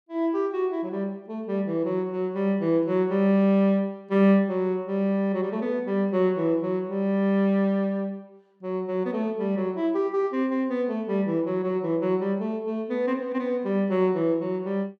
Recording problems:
none

